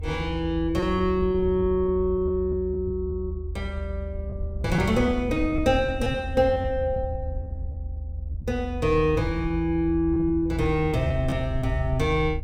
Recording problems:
rumble; below 78 Hz, SNR 7 dB
lost packets; 6% of the sound replaced, filled with repeated pitch periods

